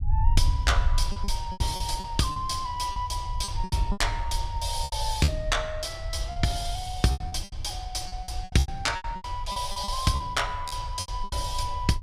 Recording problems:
low-frequency rumble; below 72 Hz, SNR 4 dB
lost packets; 14% of the sound replaced, filled with repeated pitch periods

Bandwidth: 15.5 kHz